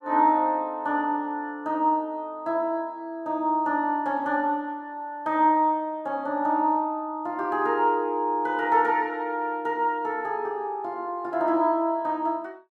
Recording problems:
none

